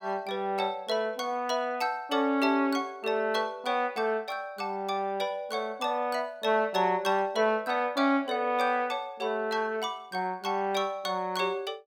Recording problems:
none

